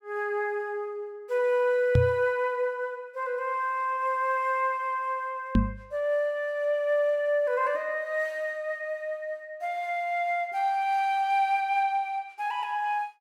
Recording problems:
knock on the microphone; at 2 s and at 5.5 s; peak +8 dB vs average level

